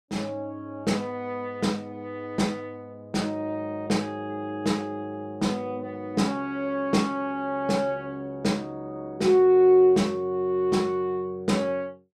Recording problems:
none

